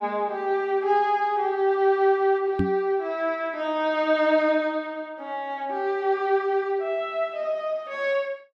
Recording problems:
microphone bump; at 2.5 s; peak +3 dB vs average level

